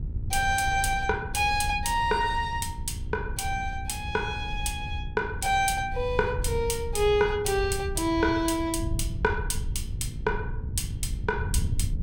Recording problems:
hum; 60 Hz, harmonics up to 900 Hz, SNR 21 dB
wind noise; below 100 Hz, SNR 7 dB

